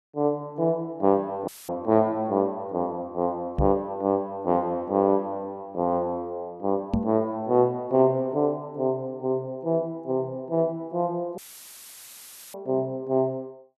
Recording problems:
audio cutting out; at 1.5 s and at 11 s for 1 s; filled with static
microphone thump; at 3.5 s and at 7 s; peak +4 dB vs average level

